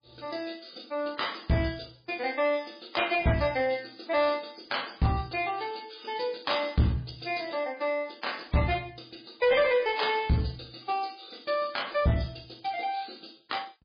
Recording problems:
codec artefacts; MP3, log-spectral distance 10 dB, nothing above 5 kHz
distortion; soft clipping, signal-to-distortion ratio 10 dB

